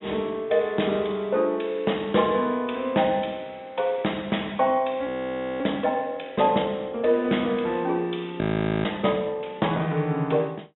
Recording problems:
low-pass filter; nothing above 3.8 kHz
audio freezing; at 5 s for 0.5 s and at 8.5 s

